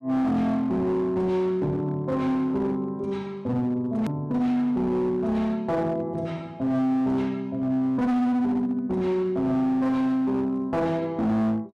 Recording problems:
distorted audio; hard clipping, signal-to-distortion ratio 10 dB
edit click; at 4 s

